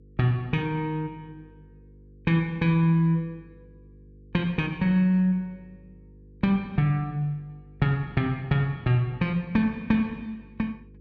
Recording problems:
hum; 50 Hz, harmonics up to 500 Hz, SNR 26 dB

